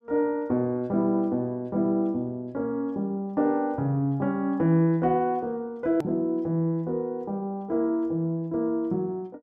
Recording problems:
edit click; at 6 s

